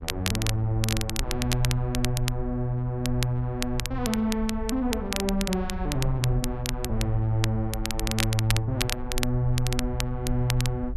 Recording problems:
low-frequency rumble; below 58 Hz, SNR 8 dB
crackle; vinyl, SNR 5 dB

